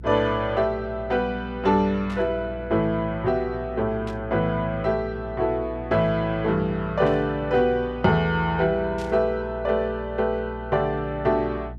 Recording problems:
hum; 60 Hz, harmonics up to 360 Hz, SNR 15 dB
static burst; 4 times, first at 2 s; peak -14 dB vs average level

